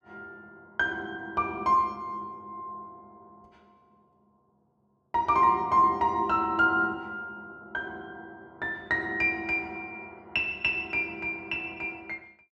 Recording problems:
none

